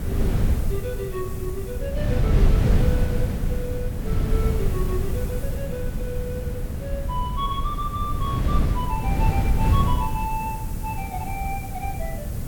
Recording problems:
background hiss; SNR 12 dB
wind on the microphone; below 130 Hz, SNR -6 dB

